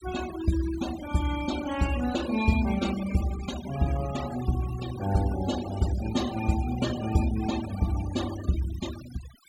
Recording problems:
denoising artefacts; signal-to-artefact ratio 12 dB

